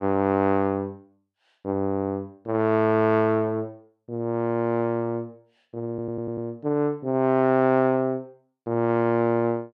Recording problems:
audio stuttering; at 6 s

